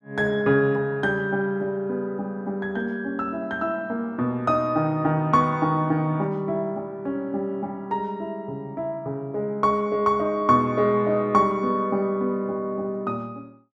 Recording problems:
none

